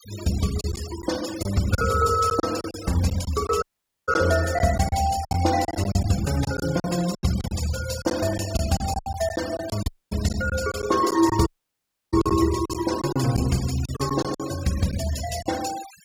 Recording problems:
noise reduction artefacts; signal-to-artefact ratio 12 dB
packet loss; 10% of the sound replaced, filled with silence
dropout; at 3.5 s, at 10 s and at 11 s for 0.5 s

